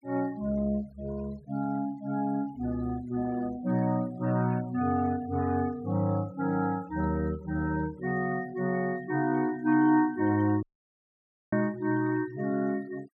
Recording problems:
noise reduction artefacts; signal-to-artefact ratio 23 dB
audio cutting out; at 11 s for 1 s

